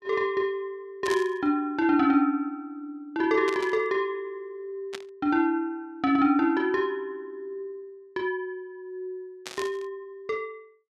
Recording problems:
static burst; 4 times, first at 1 s; peak -5 dB vs average level

